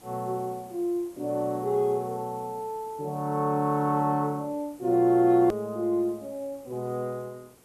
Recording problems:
hiss; SNR 26 dB
edit click; at 5.5 s

